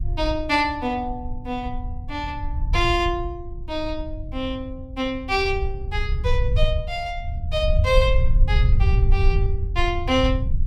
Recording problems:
rumble; below 78 Hz, SNR 0 dB

